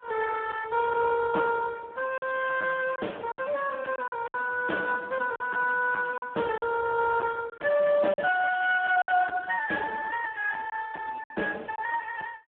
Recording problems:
phone line; 280 Hz to 2.9 kHz, Speex
distorted audio; soft clipping, signal-to-distortion ratio 9 dB
packet loss; 5% of the sound replaced, filled with silence

